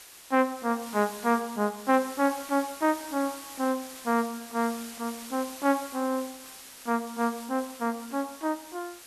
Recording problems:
background hiss; slope 0 dB per octave, SNR 14 dB

